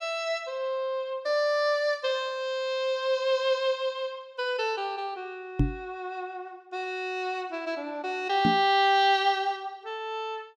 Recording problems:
microphone bump; at 5.5 s and at 8.5 s; peak +7 dB vs average level

